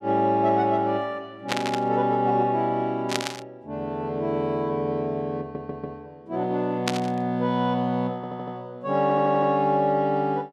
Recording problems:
burst of static; at 1.5 s, at 3 s and at 7 s; peak +3 dB vs average level
stutter; at 5.5 s, at 8 s and at 9 s

